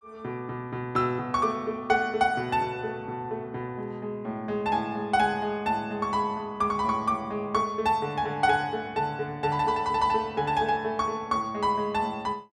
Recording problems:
none

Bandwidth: 12 kHz